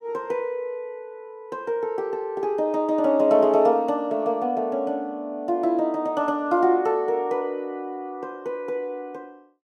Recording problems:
none

